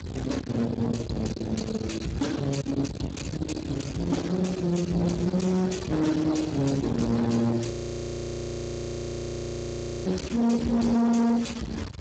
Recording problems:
codec artefacts; Speex, log-spectral distance 4 dB, nothing above 7.6 kHz
distortion; soft clipping, signal-to-distortion ratio 6 dB
rumble; below 450 Hz, SNR 8 dB
wind noise; below 3.7 kHz, SNR 17 dB
audio freezing; at 7.5 s for 2.5 s

